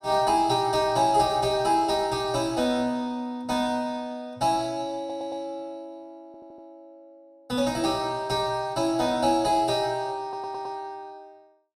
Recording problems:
audio stuttering; at 5 s, at 6.5 s and at 10 s

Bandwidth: 14 kHz